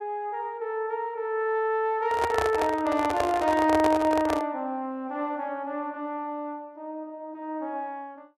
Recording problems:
microphone handling noise; from 2 to 4.5 s; peak +3 dB vs average level

